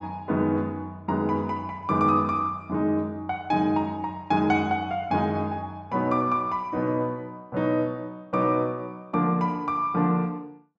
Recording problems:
none

